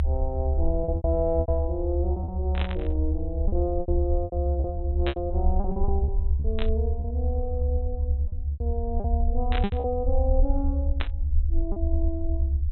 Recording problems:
low-pass filter; nothing above 4 kHz
low-frequency rumble; below 72 Hz, SNR -4 dB
packet loss; 9% of the sound replaced, filled with repeated pitch periods
static burst; 5 times, first at 2.5 s; peak +3 dB vs average level

